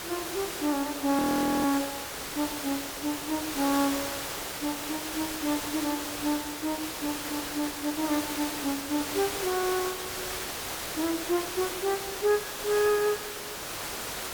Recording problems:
hiss; slope -2 dB per octave, SNR 3 dB
frozen audio; at 1 s

